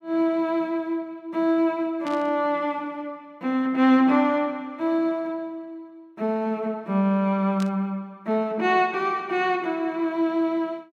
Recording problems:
burst of static; at 2 s and at 7.5 s; peak -11 dB vs average level

